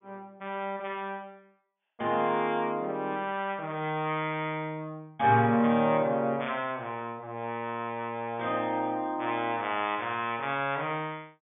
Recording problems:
treble missing; nothing above 3.5 kHz

